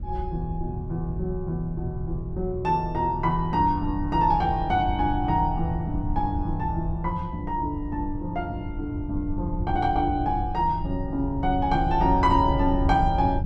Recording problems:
wind noise; below 100 Hz, SNR 7 dB

